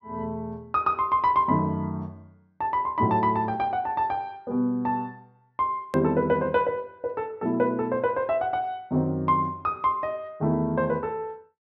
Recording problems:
low-pass filter; nothing above 6.2 kHz
click at an edit; at 6 s

